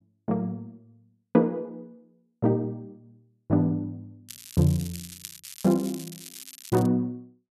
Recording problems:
crackle; from 4.5 to 7 s; loose cable, SNR 15 dB

